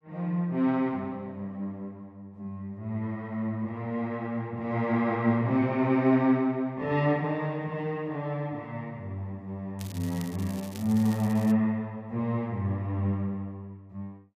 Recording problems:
crackling; from 10 to 12 s; loose cable, SNR 18 dB

